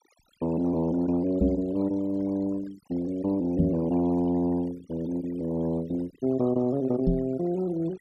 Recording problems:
denoising artefacts; signal-to-artefact ratio 21 dB
microphone thump; at 1.5 s, at 3.5 s and at 7 s; peak +6 dB vs average level

